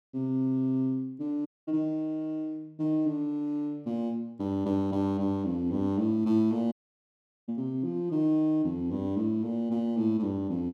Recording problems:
audio cutting out; at 1.5 s and at 6.5 s for 1 s

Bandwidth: 13 kHz